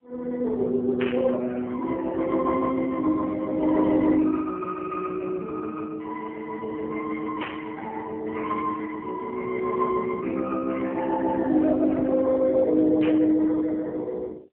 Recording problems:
telephone audio; 220 Hz to 2 kHz, AMR-NB
static burst; at 1 s, at 7.5 s and at 13 s; peak -5 dB vs average level

